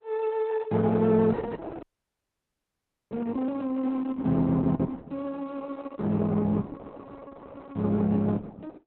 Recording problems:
lossy compression; Opus, log-spectral distance 3 dB, nothing above 4 kHz
dropout; at 2 s for 1.5 s

